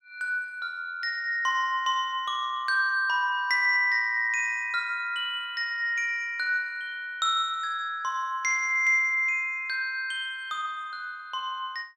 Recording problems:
none

